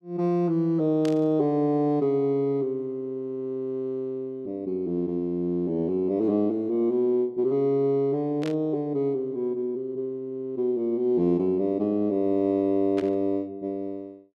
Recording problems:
static burst; at 1 s, at 8.5 s and at 13 s; peak -9 dB vs average level

